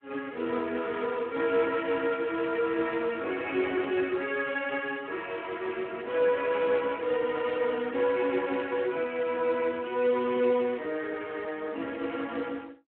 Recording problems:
telephone audio; 260 Hz to 3.3 kHz, Speex

